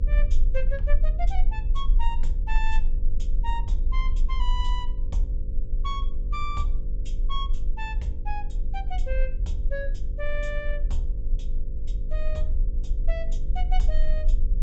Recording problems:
treble cut off; nothing above 8 kHz
hum; 50 Hz, harmonics up to 550 Hz, SNR 6 dB
low-frequency rumble; below 38 Hz, strongest tone 20 Hz, SNR -7 dB

